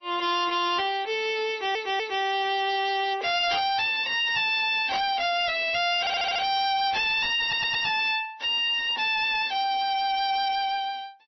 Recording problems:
lossy codec; MP3, log-spectral distance 5 dB, nothing above 5.5 kHz
distortion; hard clipping, signal-to-distortion ratio 6 dB
stutter; at 1.5 s, at 6 s and at 7.5 s

